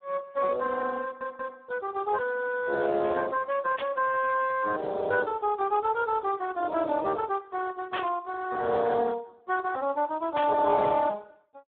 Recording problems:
telephone audio; 260 Hz to 2 kHz, Speex
audio stuttering; at 1 s
burst of static; at 4 s, at 8 s and at 10 s; peak -2 dB vs average level

